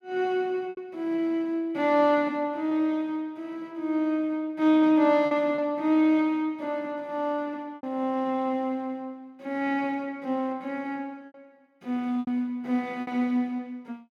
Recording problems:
lost packets; 4% of the sound replaced, filled with repeated pitch periods

